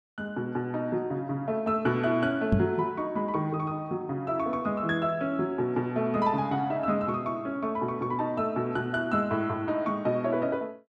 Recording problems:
microphone bump; at 2.5 s; peak +7 dB vs average level

